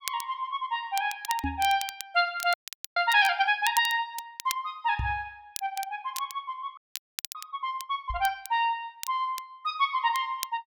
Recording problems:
crackling; vinyl, SNR 12 dB
knock on the microphone; at 1.5 s, at 5 s and at 8 s; peak 0 dB vs average level
frozen audio; at 2.5 s and at 7 s for 0.5 s

